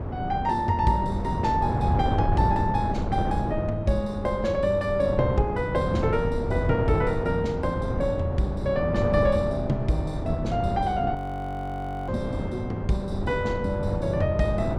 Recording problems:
wind noise; below 310 Hz, SNR 3 dB
audio freezing; at 11 s for 1 s

